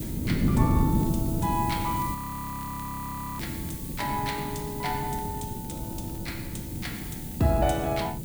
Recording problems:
hum; 60 Hz, harmonics up to 600 Hz, SNR 24 dB
hiss; slope +5 dB per octave, SNR 8 dB
wind on the microphone; below 250 Hz, SNR 0 dB
crackle; vinyl, SNR 25 dB
frozen audio; at 2 s for 1 s

